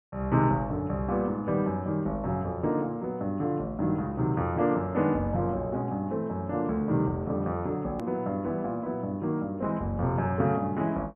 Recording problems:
treble cut off; nothing above 3.2 kHz
edit click; at 8 s

